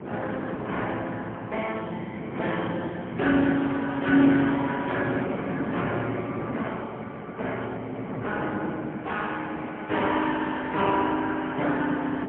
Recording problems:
phone line; 130 Hz to 3.4 kHz, AMR-NB, then MP3
wind noise; below 560 Hz, SNR 8 dB

